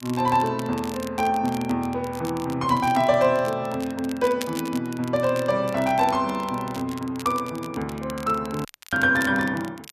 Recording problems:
crackle; vinyl, SNR 18 dB
audio cutting out; at 8.5 s

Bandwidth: 14 kHz